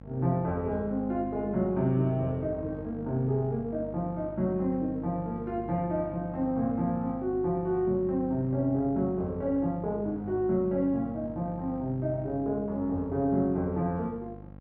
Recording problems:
hum; 50 Hz, harmonics up to 1.4 kHz, SNR 14 dB

